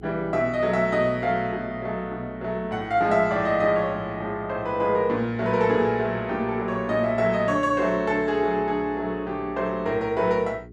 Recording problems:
hum; 60 Hz, harmonics up to 420 Hz, SNR 20 dB

